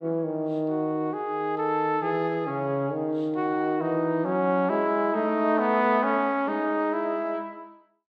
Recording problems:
none

